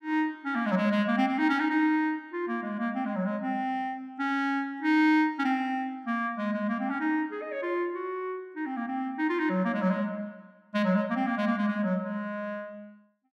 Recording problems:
none

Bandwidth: 14 kHz